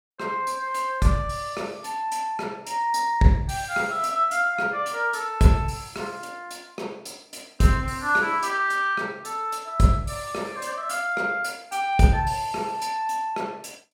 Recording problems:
none

